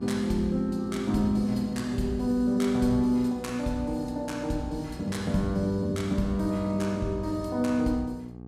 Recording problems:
hum; 60 Hz, harmonics up to 1.1 kHz, SNR 16 dB

